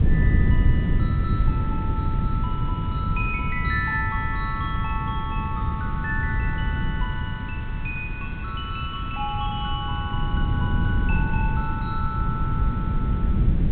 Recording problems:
low-pass filter; nothing above 4 kHz
hiss; SNR 14 dB
wind on the microphone; below 140 Hz, SNR -5 dB

